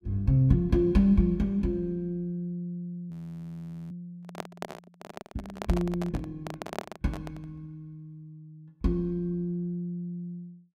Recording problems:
frozen audio; at 3 s for 1 s
microphone handling noise; from 4 to 7.5 s; peak -1 dB vs average level

